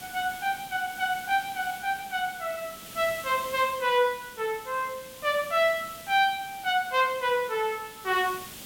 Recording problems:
background hiss; SNR 15 dB

